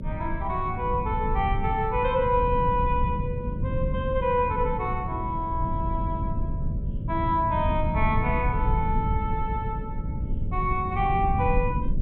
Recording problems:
treble cut off; nothing above 4 kHz
hum; 60 Hz, harmonics up to 600 Hz, SNR 18 dB
low-frequency rumble; below 140 Hz, SNR 3 dB

